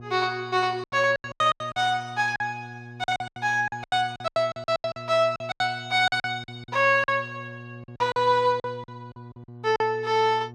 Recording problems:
hum; 60 Hz, harmonics up to 840 Hz, SNR 18 dB
packet loss; 16% of the sound replaced, filled with silence

